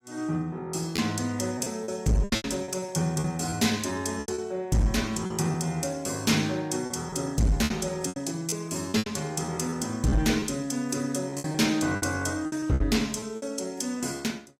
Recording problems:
lossy compression; AAC, log-spectral distance 3 dB
distortion; hard clipping, signal-to-distortion ratio 12 dB
lost packets; 10% of the sound replaced, filled with repeated pitch periods

